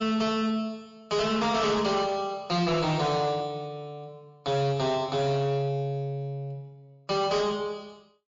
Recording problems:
lossy compression; MP3, log-spectral distance 2 dB
distorted audio; hard clipping, uneven, signal-to-distortion ratio 11 dB

